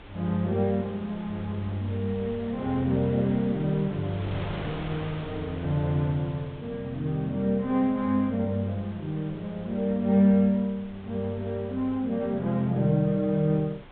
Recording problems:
treble cut off; nothing above 4 kHz
wind noise; below 1.4 kHz, SNR 17 dB

